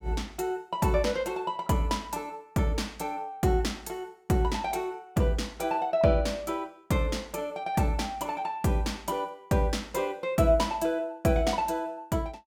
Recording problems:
none

